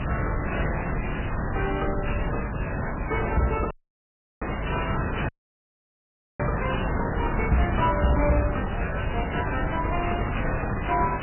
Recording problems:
codec artefacts; MP3, log-spectral distance 11 dB, nothing above 2.9 kHz
distorted audio; hard clipping, signal-to-distortion ratio 11 dB
hum; 50 Hz, harmonics up to 550 Hz, SNR 8 dB
background hiss; SNR 2 dB
low-frequency rumble; below 140 Hz, SNR 5 dB
audio cutting out; at 3.5 s for 0.5 s and at 5.5 s for 1 s

